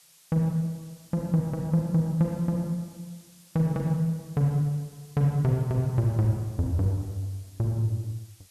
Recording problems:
hiss; slope +2 dB per octave, SNR 26 dB

